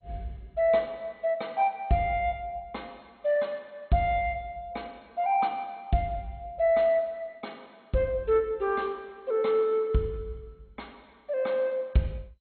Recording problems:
lossy compression; MP2, log-spectral distance 3 dB, nothing above 4.2 kHz

